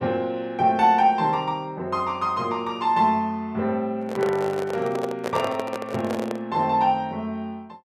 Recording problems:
handling noise; from 4 to 6.5 s; peak -1 dB vs average level

